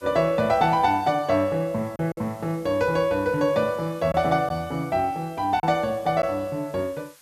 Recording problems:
hiss; slope +2 dB per octave, SNR 27 dB
packet loss; 2% of the sound replaced, filled with silence

